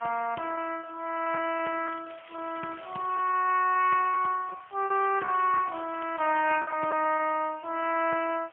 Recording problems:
phone line; 370 Hz to 3.1 kHz, AMR-NB, then MP3
background hiss; SNR 27 dB
lost packets; 8% of the sound replaced, filled with repeated pitch periods
crackling; from 1.5 to 3.5 s, at 4 s and from 5 to 6.5 s; loose cable, SNR 24 dB

